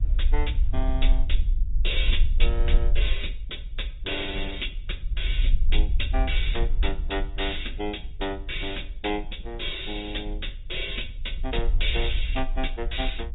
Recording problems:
low-pass filter; nothing above 3.8 kHz
codec artefacts; Opus, log-spectral distance 3 dB
rumble; below 46 Hz, strongest tone 22 Hz, SNR -2 dB

